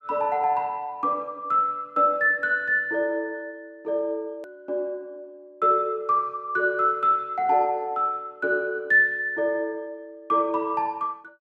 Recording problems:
hard cut with a click; at 4.5 s

